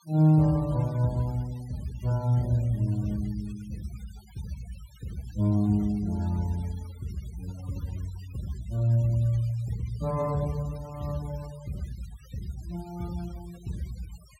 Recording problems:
noise reduction artefacts; signal-to-artefact ratio 24 dB

